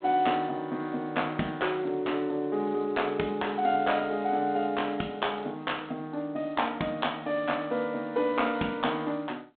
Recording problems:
telephone audio; 240 Hz to 3.6 kHz, G.726

